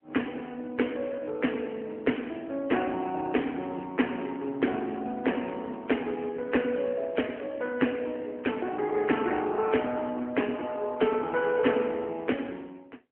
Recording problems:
telephone audio; 190 Hz to 3.2 kHz, AMR-NB

